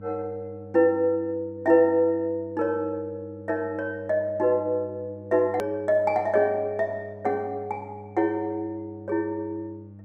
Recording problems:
electrical hum; 50 Hz, harmonics up to 600 Hz, SNR 19 dB
hard cut with a click; at 5.5 s

